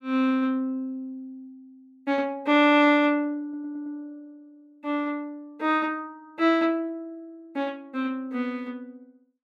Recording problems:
audio stuttering; at 3.5 s

